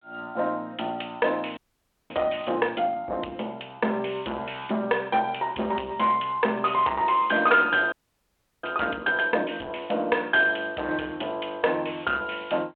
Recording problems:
phone line; 300 Hz to 3.4 kHz, G.726
distorted audio; soft clipping, signal-to-distortion ratio 11 dB
audio freezing; at 1.5 s for 0.5 s and at 8 s for 0.5 s

